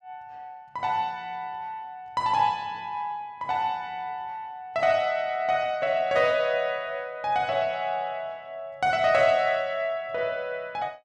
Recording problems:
none

